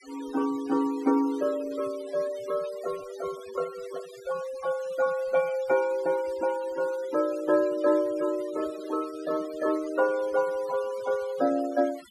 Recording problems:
denoising artefacts; signal-to-artefact ratio 19 dB

